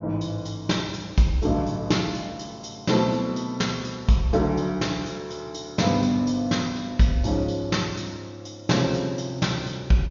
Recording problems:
treble missing; nothing above 6.8 kHz

